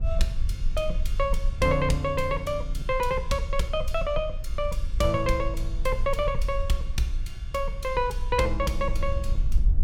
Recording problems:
low-frequency rumble; below 50 Hz, strongest tone 18 Hz, SNR 4 dB

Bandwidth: 17 kHz